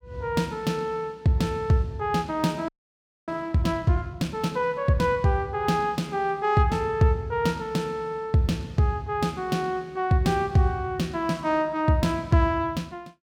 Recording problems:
audio freezing; at 2.5 s for 0.5 s

